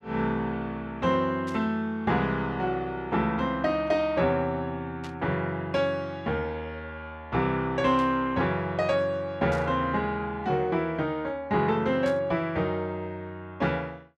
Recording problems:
static burst; 5 times, first at 1.5 s; peak -12 dB vs average level

